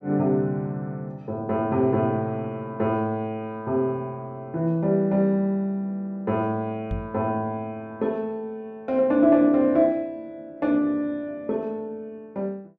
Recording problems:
microphone thump; at 7 s; peak -2 dB vs average level

